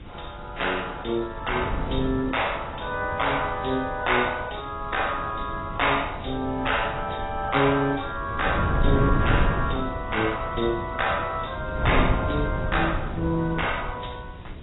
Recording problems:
lossy compression; AAC, log-spectral distance 8 dB, nothing above 3.8 kHz
hiss; SNR 27 dB
wind on the microphone; below 210 Hz, SNR 6 dB

